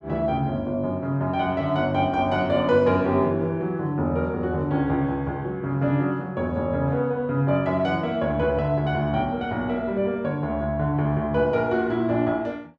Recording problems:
none

